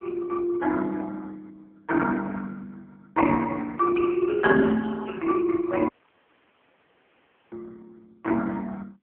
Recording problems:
phone line; 190 Hz to 2 kHz, AMR-NB
audio cutting out; at 6 s for 1.5 s

